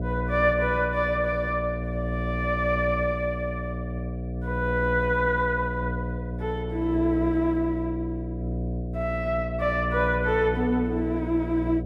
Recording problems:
hum; 60 Hz, harmonics up to 720 Hz, SNR 5 dB

